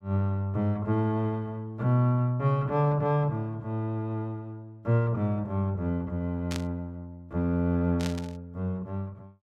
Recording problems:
burst of static; at 6.5 s and at 8 s; peak -5 dB vs average level

